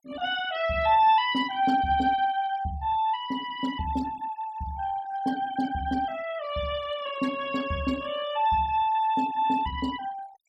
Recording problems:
noise reduction artefacts; signal-to-artefact ratio 18 dB

